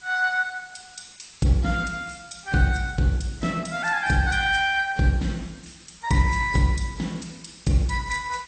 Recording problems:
codec artefacts; AAC, then MP2, log-spectral distance 8 dB, nothing above 8.5 kHz
hiss; slope +1 dB per octave, SNR 25 dB

